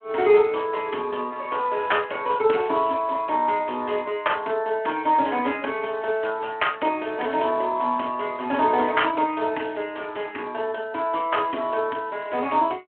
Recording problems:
phone line; 220 Hz to 3.3 kHz, Speex

